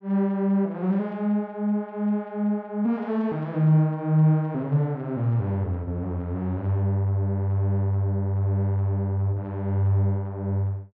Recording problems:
none

